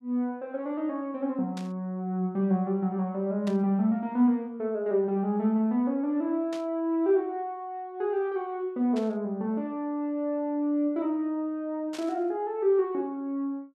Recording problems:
burst of static; 5 times, first at 1.5 s; peak -9 dB vs average level

